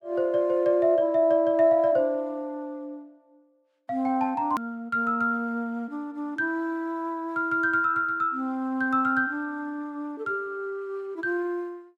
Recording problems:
edit click; at 4.5 s

